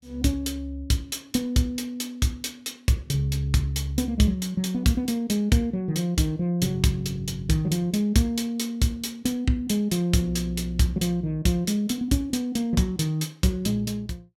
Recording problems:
none

